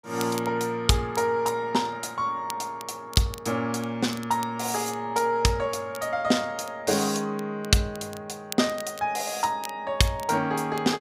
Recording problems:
crackling; vinyl, SNR 18 dB

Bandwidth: 15.5 kHz